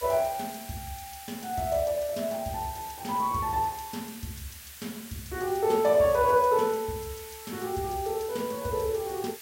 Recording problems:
background hiss; SNR 14 dB

